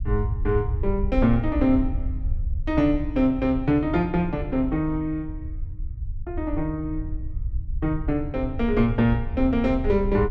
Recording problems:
rumble; below 76 Hz, SNR 7 dB

